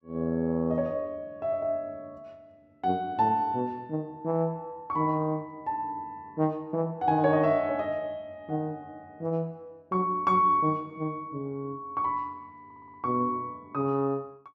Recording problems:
audio stuttering; at 13 s

